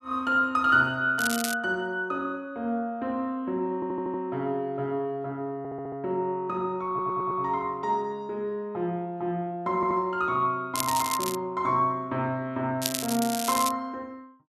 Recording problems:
crackling; at 1 s, at 11 s and at 13 s; loose cable, SNR 4 dB
stutter; 4 times, first at 4 s

